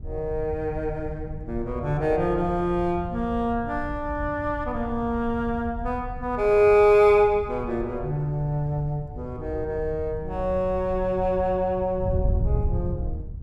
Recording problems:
wind noise; below 100 Hz, SNR 10 dB

